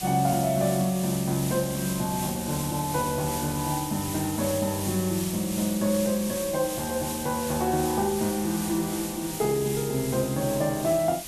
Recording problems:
background hiss; SNR 7 dB

